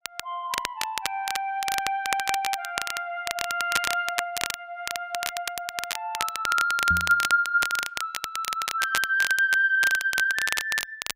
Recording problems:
crackling; vinyl, SNR 5 dB
microphone thump; at 7 s; peak -3 dB vs average level

